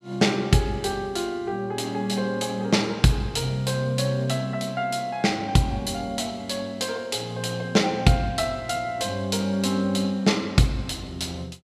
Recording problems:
none

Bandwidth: 14.5 kHz